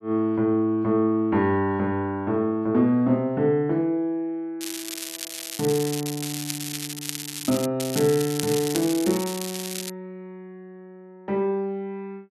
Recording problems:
crackle; from 4.5 to 7.5 s and from 8 to 10 s; loose cable, SNR 7 dB

